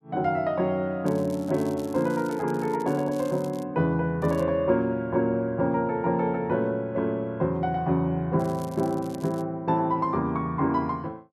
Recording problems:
crackling; from 1 to 3.5 s, at 4 s and from 8.5 to 9.5 s; loose cable, SNR 24 dB

